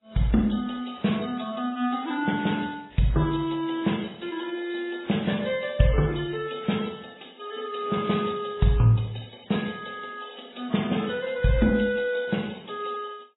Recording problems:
codec artefacts; MP3, then AAC, log-spectral distance 6 dB, nothing above 3.8 kHz

